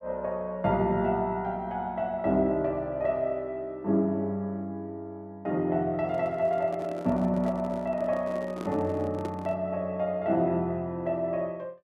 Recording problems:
microphone handling noise; from 6 to 9.5 s; peak -3 dB vs average level

